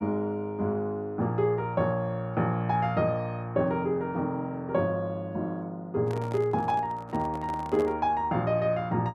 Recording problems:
microphone handling noise; from 6 to 8 s; peak -7 dB vs average level

